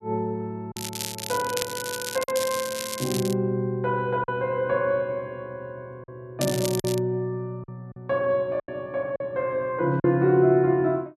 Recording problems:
lost packets; 4% of the sound replaced, filled with silence
crackling; from 1 to 3.5 s and at 6.5 s; loose cable, SNR 7 dB

